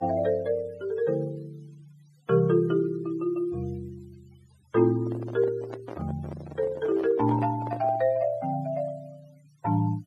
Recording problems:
noise reduction artefacts; signal-to-artefact ratio 26 dB
handling noise; from 5 to 8 s; peak -7 dB vs average level

